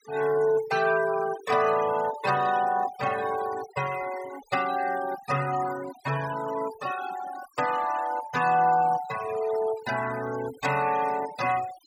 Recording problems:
denoising artefacts; signal-to-artefact ratio 14 dB

